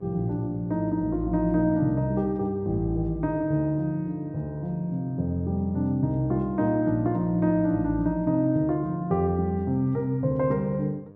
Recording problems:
hum; 50 Hz, harmonics up to 1.2 kHz, SNR 25 dB

